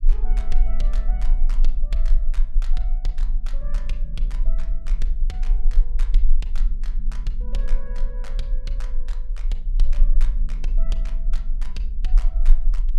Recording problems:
rumble; below 32 Hz, strongest tone 20 Hz, SNR -15 dB

